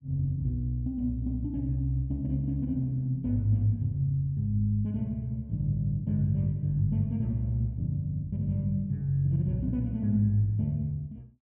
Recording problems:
none

